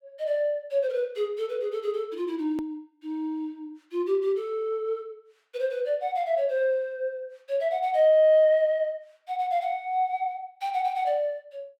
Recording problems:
hard cut with a click; at 2.5 s

